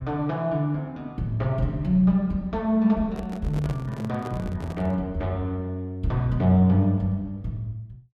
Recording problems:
handling noise; from 3 to 5 s; peak -7 dB vs average level

